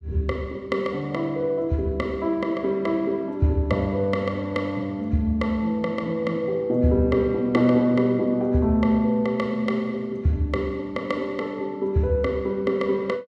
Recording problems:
none

